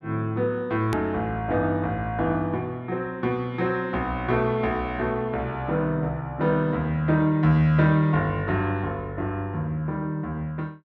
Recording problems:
edit click; at 1 s

